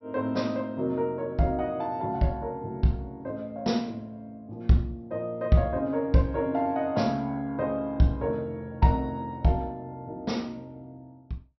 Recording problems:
treble missing; nothing above 5.8 kHz

